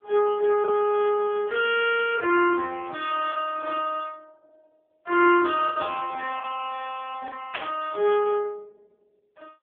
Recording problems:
phone line; 300 Hz to 3.3 kHz, AMR-NB
lost packets; 3% of the sound replaced, filled with the last packet
burst of static; at 7.5 s; peak -3 dB vs average level

